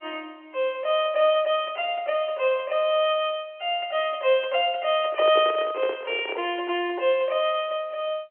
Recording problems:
telephone audio; 280 Hz to 3.3 kHz, G.711
microphone handling noise; from 5 to 6.5 s; peak -2 dB vs average level

